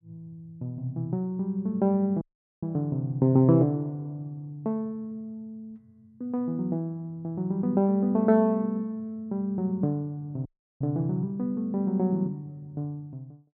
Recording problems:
audio cutting out; at 2 s and at 10 s

